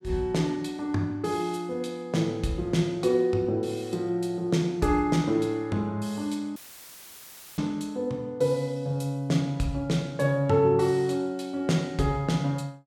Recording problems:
audio cutting out; at 6.5 s for 1 s; filled with static

